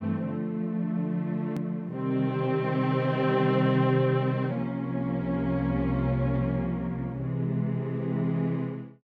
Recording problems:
click at an edit; at 1.5 s

